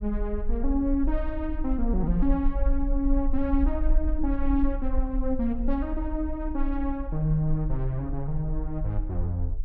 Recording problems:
rumble; below 44 Hz, strongest tone 20 Hz, SNR 3 dB

